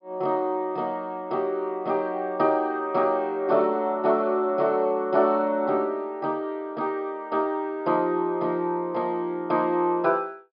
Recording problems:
low-pass filter; nothing above 5.5 kHz

